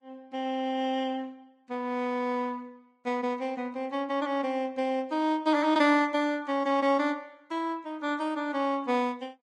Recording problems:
codec artefacts; Vorbis, log-spectral distance 2 dB, nothing above 10.1 kHz

